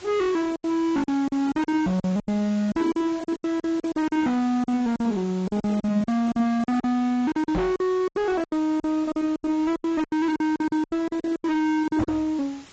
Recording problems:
codec artefacts; AAC, log-spectral distance 4 dB, nothing above 7.3 kHz
distorted audio; hard clipping, signal-to-distortion ratio 6 dB
hiss; slope -2 dB per octave, SNR 22 dB
lost packets; 17% of the sound replaced, filled with silence
microphone bump; at 7.5 s and at 12 s; peak +3 dB vs average level

